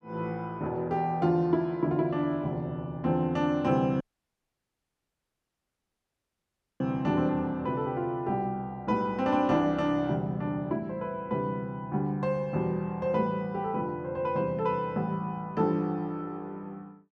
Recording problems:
dropout; at 4 s for 3 s

